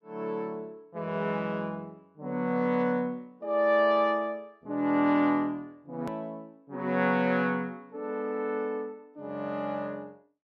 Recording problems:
click at an edit; at 6 s

